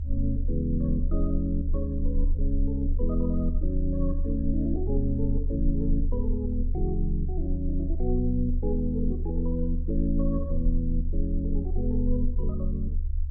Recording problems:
low-frequency rumble; below 74 Hz, strongest tone 28 Hz, SNR 0 dB

